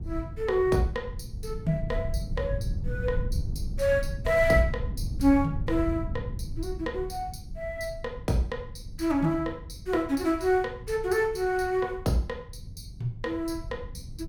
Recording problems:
rumble; below 110 Hz, SNR 8 dB

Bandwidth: 17.5 kHz